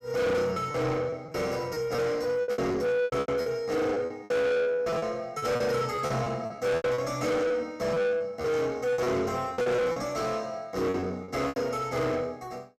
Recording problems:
distorted audio; soft clipping, signal-to-distortion ratio 7 dB
packet loss; 13% of the sound replaced, filled with repeated pitch periods

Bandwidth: 14 kHz